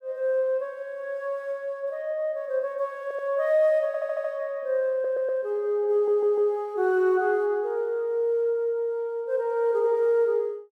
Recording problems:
audio stuttering; 4 times, first at 3 s

